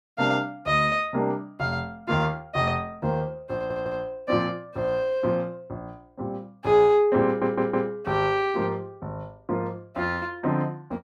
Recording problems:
audio stuttering; at 3.5 s and at 7.5 s

